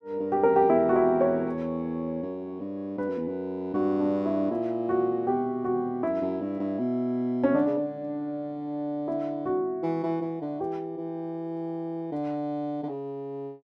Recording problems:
none

